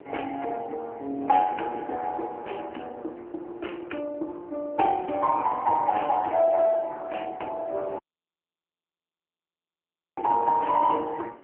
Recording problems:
phone line; 280 Hz to 3 kHz, AMR-NB
wind on the microphone; below 620 Hz, SNR 19 dB
dropout; at 8 s for 2 s

